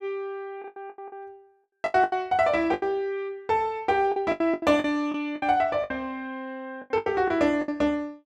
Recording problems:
packet loss; 14% of the sound replaced, filled with the last packet

